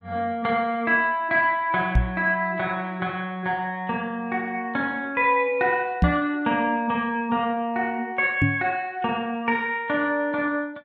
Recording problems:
microphone thump; at 2 s, at 6 s and at 8.5 s; peak +8 dB vs average level

